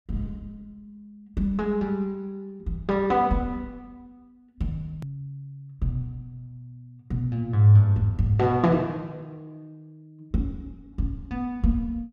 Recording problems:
hard cut with a click; at 5 s

